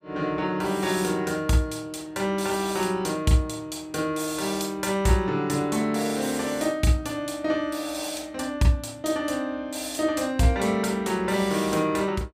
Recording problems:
none

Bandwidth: 15.5 kHz